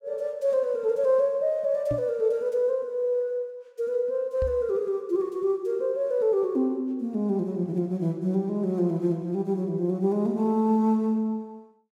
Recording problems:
knock on the microphone; at 2 s and at 4.5 s; peak -2 dB vs average level

